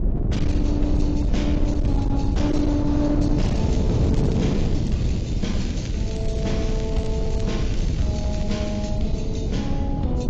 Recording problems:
lossy codec; AAC, log-spectral distance 2 dB, nothing above 7.3 kHz
distorted audio; hard clipping, signal-to-distortion ratio 11 dB
rumble; below 120 Hz, SNR -1 dB
wind noise; below 240 Hz, SNR 0 dB
crackling; from 3.5 to 6.5 s and from 6.5 to 9 s; loose cable, SNR 16 dB

